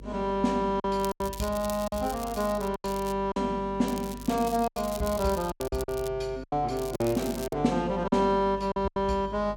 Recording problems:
hum; 50 Hz, harmonics up to 500 Hz, SNR 17 dB
packet loss; 9% of the sound replaced, filled with silence
crackling; from 1 to 3 s, from 4 to 6 s and at 7 s; loose cable, SNR 15 dB

